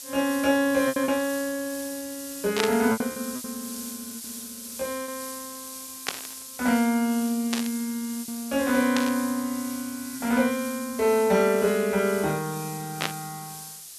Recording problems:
hiss; SNR 11 dB
packet loss; 5% of the sound replaced, filled with repeated pitch periods
static burst; 5 times, first at 2.5 s; peak +4 dB vs average level

